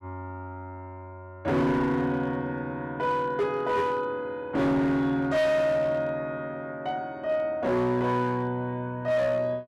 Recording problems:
distortion; hard clipping, signal-to-distortion ratio 10 dB

